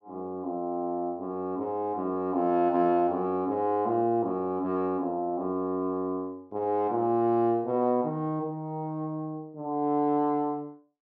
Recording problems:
none

